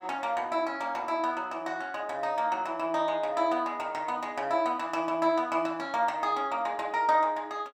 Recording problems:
none

